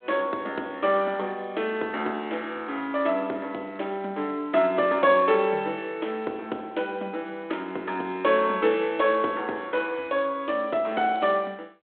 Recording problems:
phone line; 240 Hz to 3.6 kHz, G.726

